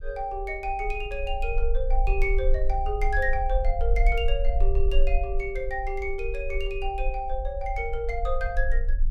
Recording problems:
rumble; below 42 Hz, strongest tone 22 Hz, SNR 0 dB

